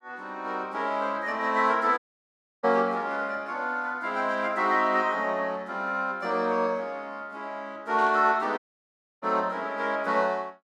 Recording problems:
audio cutting out; at 2 s for 0.5 s and at 8.5 s for 0.5 s
burst of static; at 8 s; peak -13 dB vs average level

